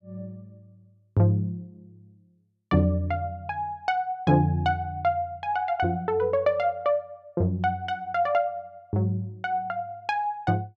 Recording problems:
none

